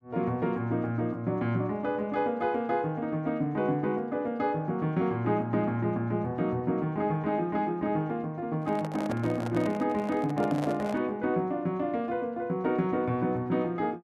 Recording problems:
microphone handling noise; from 8.5 to 11 s; peak -3 dB vs average level

